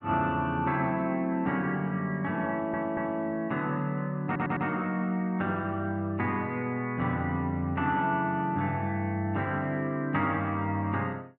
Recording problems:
audio stuttering; at 2.5 s and at 4.5 s

